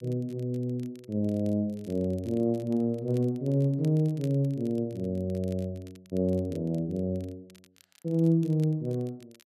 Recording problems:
crackle; vinyl, SNR 29 dB

